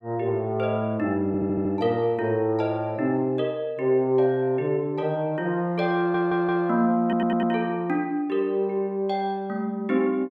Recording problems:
audio stuttering; at 1.5 s, at 6 s and at 7 s

